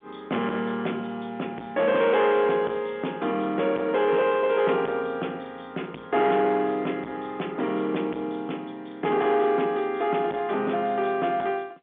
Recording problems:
telephone audio; 220 Hz to 3.5 kHz, G.711
distorted audio; soft clipping, signal-to-distortion ratio 12 dB

